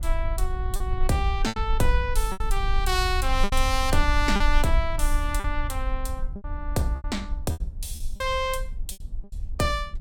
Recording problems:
rumble; below 48 Hz, strongest tone 22 Hz, SNR 3 dB
packet loss; 8% of the sound replaced, filled with repeated pitch periods

